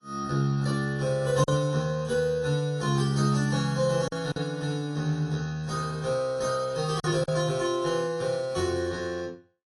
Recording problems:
codec artefacts; AAC, then AAC, log-spectral distance 2 dB, nothing above 10.4 kHz
packet loss; 2% of the sound replaced, filled with silence

